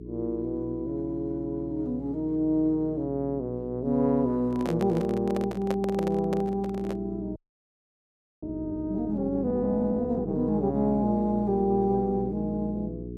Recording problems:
hum; 60 Hz, harmonics up to 420 Hz, SNR 12 dB
handling noise; from 4.5 to 7 s; peak -1 dB vs average level
frozen audio; at 7.5 s for 1 s

